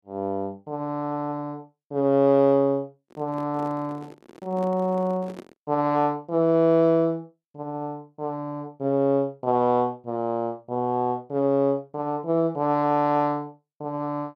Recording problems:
handling noise; from 3 to 5.5 s; peak -11 dB vs average level

